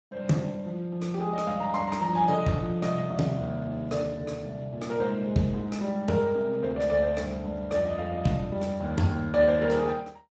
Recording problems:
lossy codec; Speex, log-spectral distance 3 dB, nothing above 7.3 kHz

